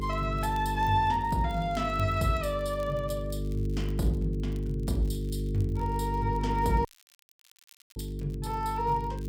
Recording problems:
hum; 50 Hz, harmonics up to 450 Hz, SNR 3 dB
crackling; vinyl, SNR 27 dB
dropout; at 7 s for 1 s

